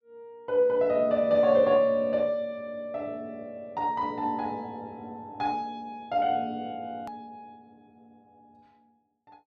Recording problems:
click at an edit; at 7 s

